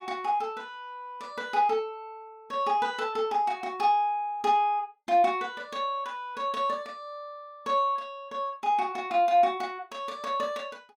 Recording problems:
none

